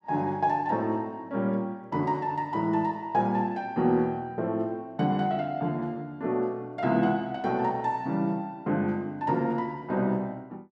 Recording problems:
none

